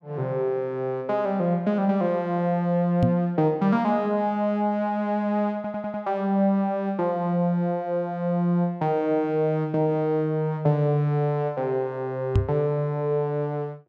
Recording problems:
microphone bump; at 3 s and at 12 s; peak +6 dB vs average level
stutter; at 5.5 s

